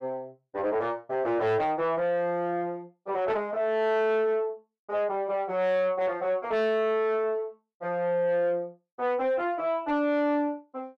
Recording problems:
distorted audio; soft clipping, signal-to-distortion ratio 10 dB

